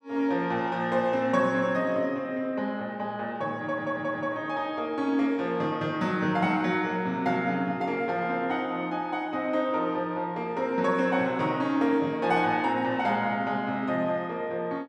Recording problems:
audio stuttering; at 3.5 s

